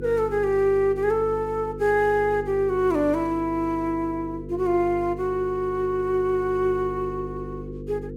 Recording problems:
hum; 50 Hz, harmonics up to 500 Hz, SNR 12 dB

